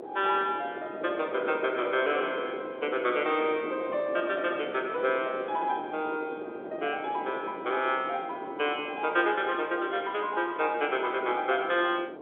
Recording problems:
phone line; 300 Hz to 3.6 kHz, G.711
wind on the microphone; below 560 Hz, SNR 12 dB

